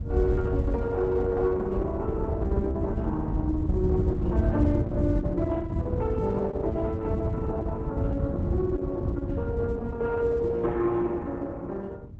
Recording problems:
codec artefacts; Opus, log-spectral distance 2 dB
wind noise; below 110 Hz, SNR 0 dB

